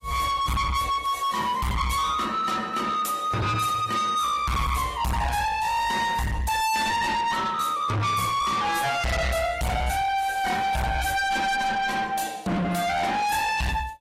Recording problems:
lossy codec; AAC, log-spectral distance 4 dB, nothing above 14.3 kHz
distorted audio; soft clipping, signal-to-distortion ratio 6 dB

